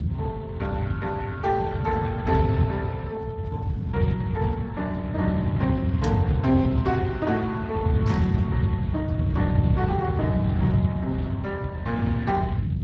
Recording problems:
lossy compression; Speex, log-spectral distance 2 dB
low-frequency rumble; below 150 Hz, SNR -1 dB
static burst; at 6 s and at 8 s; peak -6 dB vs average level

